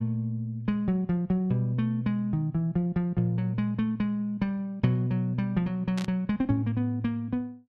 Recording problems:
burst of static; at 6 s; peak -7 dB vs average level

